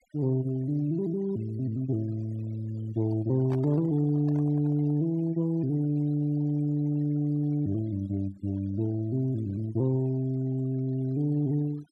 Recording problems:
denoising artefacts; signal-to-artefact ratio 26 dB
handling noise; from 3 to 5 s; peak -9 dB vs average level

